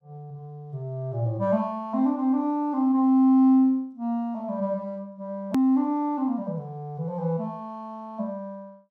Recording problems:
hard cut with a click; at 5.5 s

